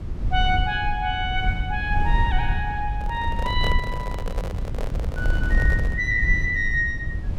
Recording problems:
low-frequency rumble; below 80 Hz, SNR 2 dB
microphone handling noise; from 3 to 6 s; peak -3 dB vs average level

